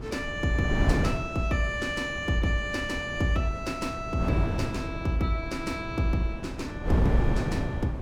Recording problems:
wind noise; below 290 Hz, SNR 3 dB

